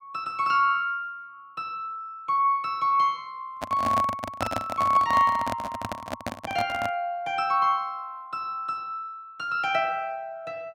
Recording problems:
microphone handling noise; from 3.5 to 7 s; peak +1 dB vs average level

